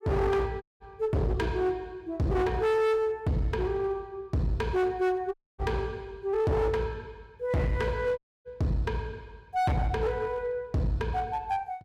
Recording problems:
distorted audio; hard clipping, uneven, signal-to-distortion ratio 7 dB
audio cutting out; at 0.5 s, at 5.5 s and at 8 s

